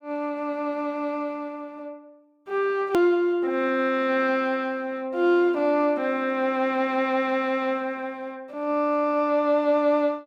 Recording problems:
edit click; at 3 s

